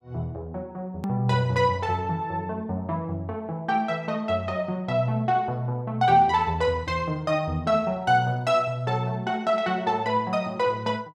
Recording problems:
click at an edit; at 1 s

